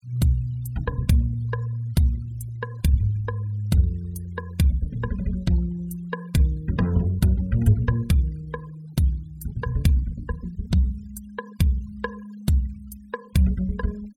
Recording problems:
denoising artefacts; signal-to-artefact ratio 25 dB

